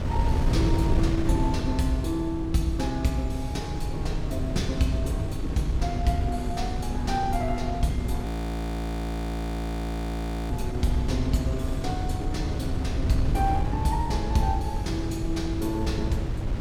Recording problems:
wind noise; below 140 Hz, SNR 0 dB
frozen audio; at 8.5 s for 2.5 s

